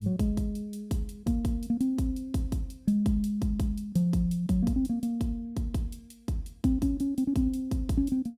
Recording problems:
none

